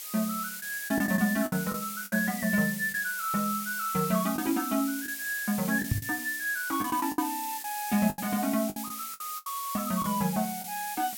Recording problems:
background hiss; SNR 6 dB
lost packets; 8% of the sound replaced, filled with the last packet
microphone thump; at 6 s; peak +6 dB vs average level

